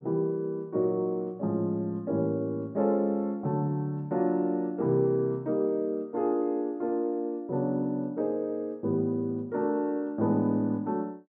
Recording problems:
none

